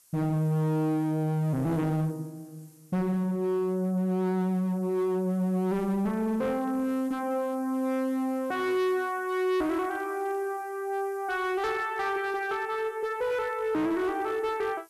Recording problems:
distorted audio; hard clipping, signal-to-distortion ratio 10 dB
hiss; SNR 27 dB

